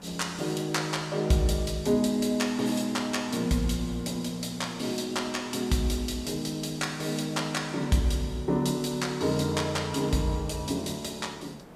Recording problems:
background hiss; slope -8 dB per octave, SNR 20 dB

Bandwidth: 15 kHz